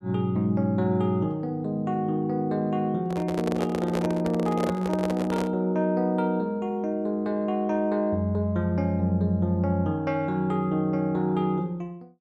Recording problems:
handling noise; from 3 to 5.5 s; peak 0 dB vs average level

